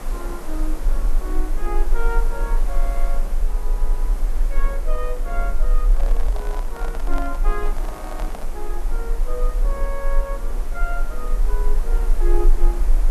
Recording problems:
hiss; slope -7 dB per octave, SNR 5 dB
low-frequency rumble; below 34 Hz, strongest tone 20 Hz, SNR -8 dB
microphone handling noise; from 6 to 8.5 s; peak +3 dB vs average level

